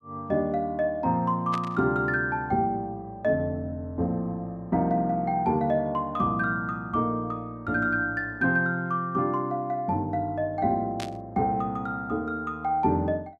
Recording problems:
burst of static; at 1.5 s and at 11 s; peak -6 dB vs average level

